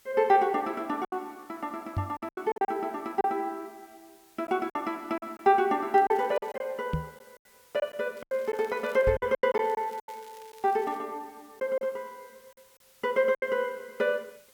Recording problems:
background hiss; slope 0 dB per octave, SNR 29 dB
packet loss; 9% of the sound replaced, filled with silence
microphone bump; at 2 s, at 7 s and at 9 s; peak +2 dB vs average level
crackle; at 6 s, at 8 s and from 9.5 to 11 s; loose cable, SNR 28 dB

